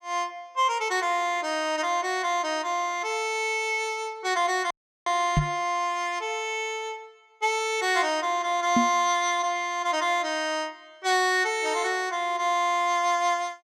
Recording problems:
audio cutting out; at 4.5 s
microphone thump; at 5.5 s and at 9 s; peak +5 dB vs average level

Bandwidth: 15.5 kHz